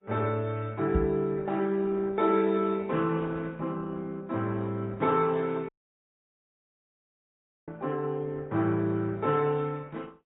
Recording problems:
low-pass filter; nothing above 3.7 kHz
codec artefacts; Opus, then MP3, log-spectral distance 3 dB
microphone thump; at 1 s; peak +4 dB vs average level
dropout; at 5.5 s for 2 s

